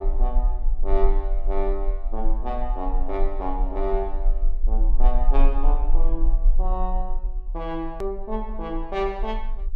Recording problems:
low-frequency rumble; below 34 Hz, strongest tone 20 Hz, SNR -4 dB
edit click; at 8 s

